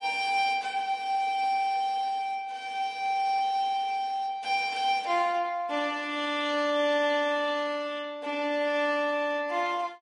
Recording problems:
lossy codec; MP3, log-spectral distance 2 dB, nothing above 10.4 kHz

